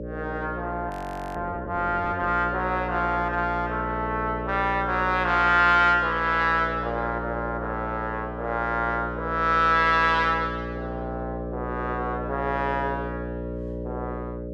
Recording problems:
hum; 60 Hz, harmonics up to 600 Hz, SNR 9 dB
frozen audio; at 1 s

